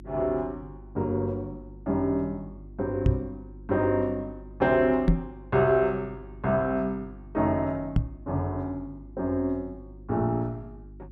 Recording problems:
electrical hum; 50 Hz, harmonics up to 350 Hz, SNR 18 dB
microphone thump; at 3 s, at 5 s and at 8 s; peak +9 dB vs average level

